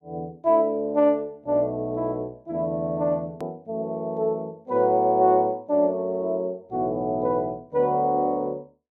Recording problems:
hard cut with a click; at 3.5 s

